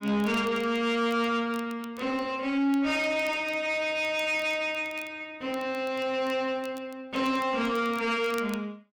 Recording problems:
distortion; soft clipping, signal-to-distortion ratio 12 dB
crackling; vinyl, SNR 24 dB

